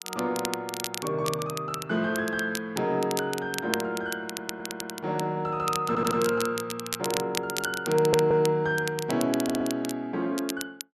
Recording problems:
crackling; vinyl, SNR 8 dB
stutter; 4 times, first at 4.5 s

